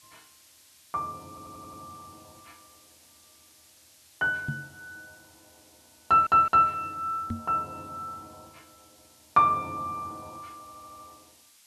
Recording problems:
hiss; slope +3 dB per octave, SNR 29 dB
audio stuttering; at 1.5 s, at 6 s and at 11 s
microphone bump; at 4.5 s and at 7.5 s; peak -3 dB vs average level

